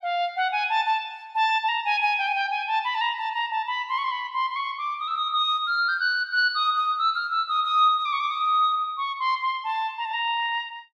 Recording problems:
none

